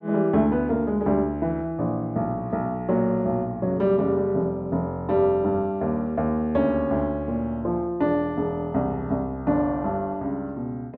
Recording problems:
none

